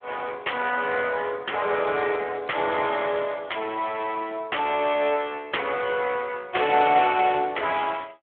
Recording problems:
telephone audio; 340 Hz to 3.3 kHz, Speex

